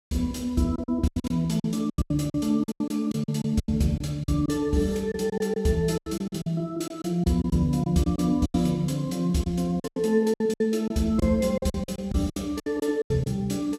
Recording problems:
packet loss; 15% of the sound replaced, filled with silence

